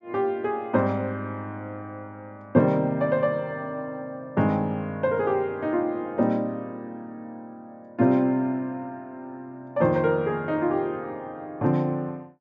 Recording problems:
treble missing; nothing above 8 kHz

